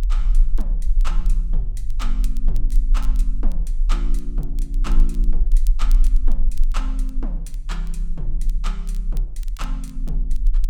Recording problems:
rumble; below 36 Hz, strongest tone 22 Hz, SNR -12 dB
crackle; vinyl, SNR 15 dB

